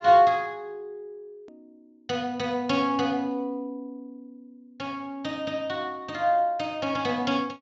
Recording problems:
treble missing; nothing above 7.4 kHz
click at an edit; at 1.5 s

